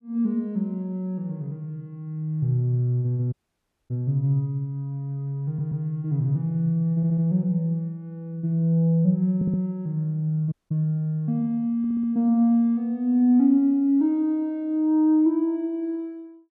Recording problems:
audio cutting out; at 3.5 s for 0.5 s and at 11 s
audio stuttering; 4 times, first at 5.5 s

